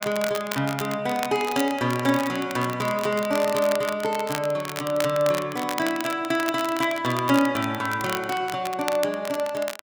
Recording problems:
crackle; vinyl, SNR 10 dB

